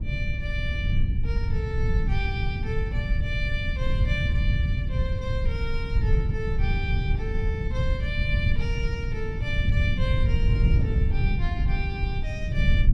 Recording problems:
low-frequency rumble; below 100 Hz, SNR -7 dB
wind on the microphone; below 160 Hz, SNR 2 dB

